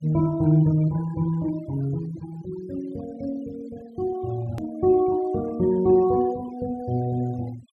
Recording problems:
noise reduction artefacts; signal-to-artefact ratio 22 dB
click at an edit; at 4.5 s

